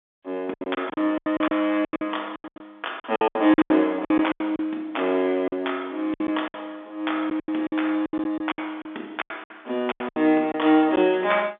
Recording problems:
phone line; 240 Hz to 3.6 kHz, G.711
lost packets; 17% of the sound replaced, filled with silence

